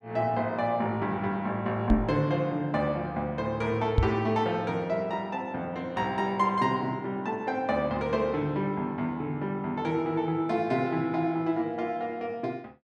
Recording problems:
microphone bump; at 2 s and at 4 s; peak +9 dB vs average level

